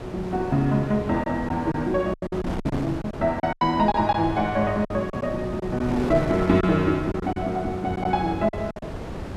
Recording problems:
wind on the microphone; below 610 Hz, SNR 9 dB
lost packets; 9% of the sound replaced, filled with silence

